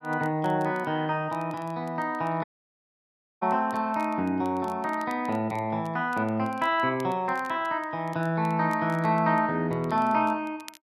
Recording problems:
crackling; vinyl, SNR 28 dB
dropout; at 2.5 s for 1 s

